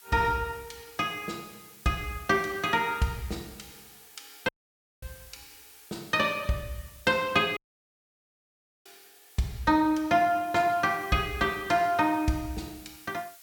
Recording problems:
background hiss; SNR 22 dB
dropout; at 4.5 s for 0.5 s and at 7.5 s for 1.5 s

